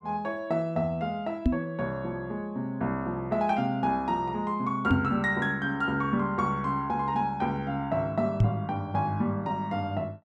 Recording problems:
microphone bump; at 1.5 s, at 5 s and at 8.5 s; peak +9 dB vs average level

